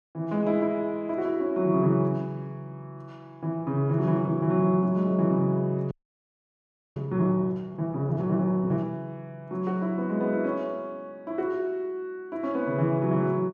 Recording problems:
frozen audio; at 6 s for 1 s

